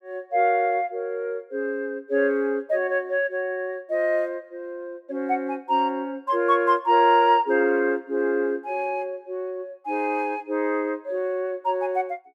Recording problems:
none

